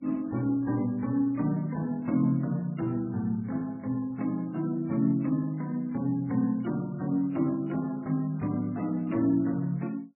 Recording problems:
lossy compression; MP3, log-spectral distance 2 dB, nothing above 2.4 kHz

